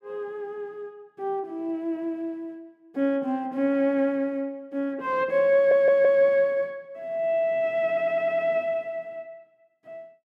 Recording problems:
stutter; at 5.5 s and at 8 s

